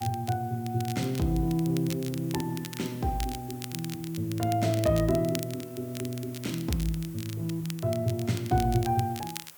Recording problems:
hiss; slope -1 dB per octave, SNR 20 dB
crackling; vinyl, SNR 13 dB

